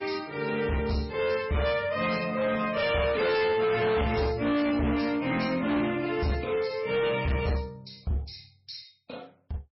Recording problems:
codec artefacts; MP3, log-spectral distance 5 dB, nothing above 5.5 kHz
distortion; hard clipping, uneven, signal-to-distortion ratio 7 dB

